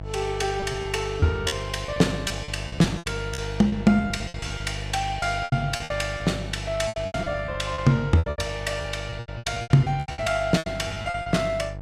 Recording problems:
electrical hum; 50 Hz, harmonics up to 850 Hz, SNR 10 dB
lost packets; 17% of the sound replaced, filled with repeated pitch periods

